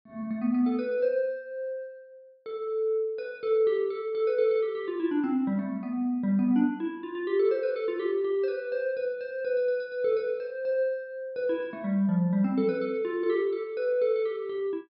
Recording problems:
treble missing; nothing above 5.5 kHz

